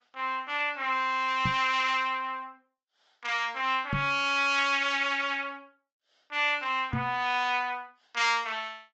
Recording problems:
treble missing; nothing above 7.6 kHz
lossy compression; Opus, log-spectral distance 3 dB
microphone bump; at 1.5 s, at 4 s and at 7 s; peak 0 dB vs average level

